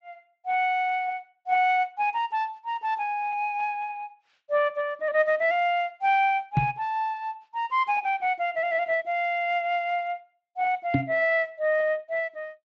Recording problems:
codec artefacts; Speex, log-spectral distance 2 dB
microphone bump; at 6.5 s and at 11 s; peak +6 dB vs average level

